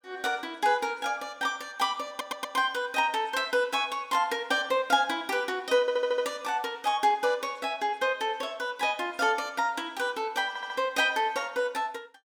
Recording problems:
audio stuttering; at 2 s, at 6 s and at 10 s

